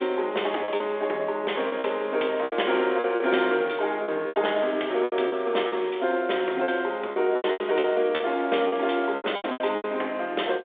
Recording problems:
telephone audio; 320 Hz to 3.6 kHz, G.726
packet loss; 12% of the sound replaced, filled with repeated pitch periods

